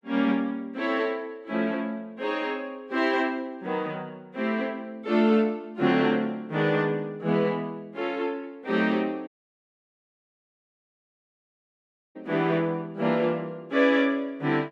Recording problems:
audio cutting out; at 9.5 s for 3 s

